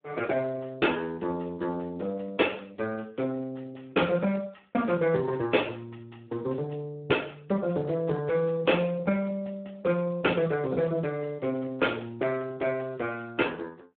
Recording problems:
phone line; 220 Hz to 3.4 kHz, Speex

